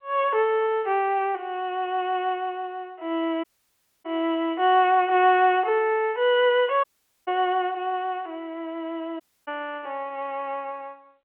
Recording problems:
phone line; 340 Hz to 3.3 kHz, G.711
dropout; at 3.5 s for 0.5 s, at 7 s and at 9 s

